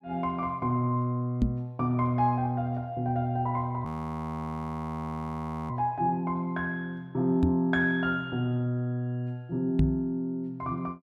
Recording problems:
microphone thump; at 1.5 s, at 7.5 s and at 10 s; peak +8 dB vs average level
audio freezing; at 4 s for 2 s

